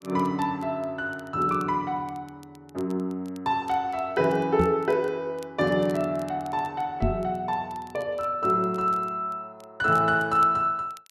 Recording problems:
crackle; vinyl, SNR 29 dB
microphone thump; at 4.5 s and at 7 s; peak +4 dB vs average level

